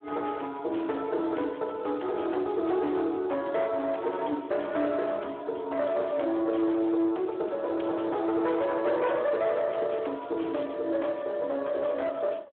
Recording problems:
phone line; 240 Hz to 3.4 kHz, Speex
distorted audio; hard clipping, uneven, signal-to-distortion ratio 11 dB

